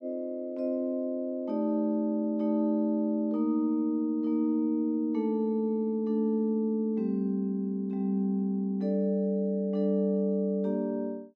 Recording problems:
none

